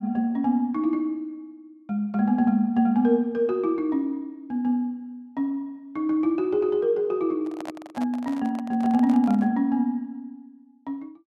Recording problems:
handling noise; from 7.5 to 9.5 s; peak -8 dB vs average level

